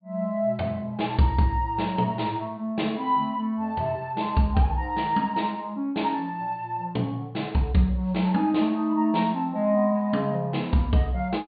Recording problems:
treble cut off; nothing above 4.7 kHz

